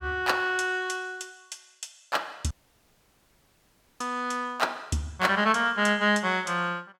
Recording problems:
audio cutting out; at 2.5 s for 1.5 s

